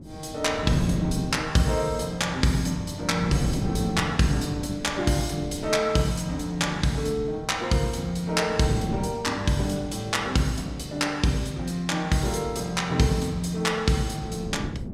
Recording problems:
wind noise; below 260 Hz, SNR 10 dB

